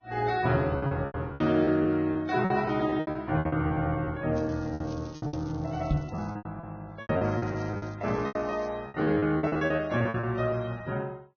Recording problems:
lossy codec; Vorbis, log-spectral distance 3 dB, nothing above 6.3 kHz
lost packets; 16% of the sound replaced, filled with repeated pitch periods
crackling; from 4.5 to 6.5 s, at 7 s and at 8 s; loose cable, SNR 27 dB
knock on the microphone; at 6 s; peak +5 dB vs average level

